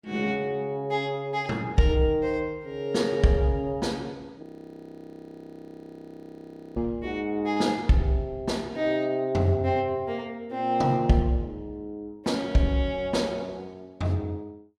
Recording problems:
audio freezing; at 4.5 s for 2.5 s

